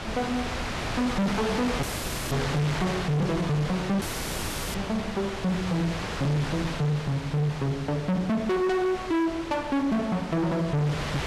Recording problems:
distortion; hard clipping, signal-to-distortion ratio 6 dB
wind noise; below 2.7 kHz, SNR 7 dB
dropout; at 2 s and at 4 s for 0.5 s

